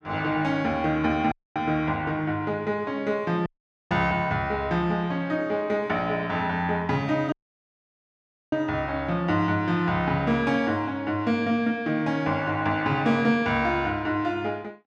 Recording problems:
dropout; at 1.5 s, at 3.5 s and at 7.5 s for 1 s

